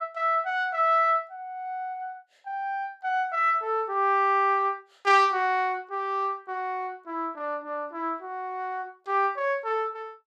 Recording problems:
none

